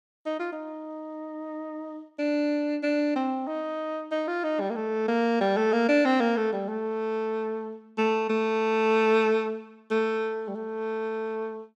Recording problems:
none

